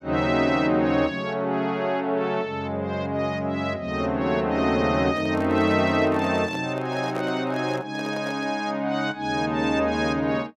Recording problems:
microphone handling noise; from 5 to 8.5 s; peak -6 dB vs average level

